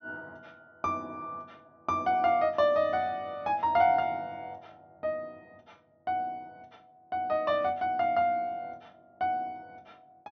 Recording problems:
low-pass filter; nothing above 6.2 kHz

